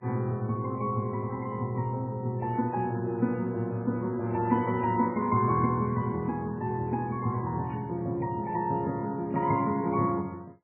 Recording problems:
codec artefacts; MP3, log-spectral distance 2 dB, nothing above 3 kHz

